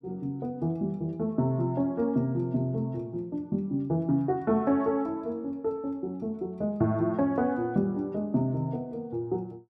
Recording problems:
none

